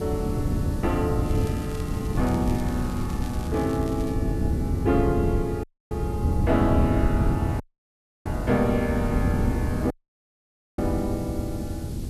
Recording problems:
background hiss; slope +3 dB per octave, SNR 20 dB
wind noise; below 190 Hz, SNR 0 dB
crackle; from 1.5 to 4 s; loose cable, SNR 18 dB
dropout; at 5.5 s, at 7.5 s for 0.5 s and at 10 s for 1 s

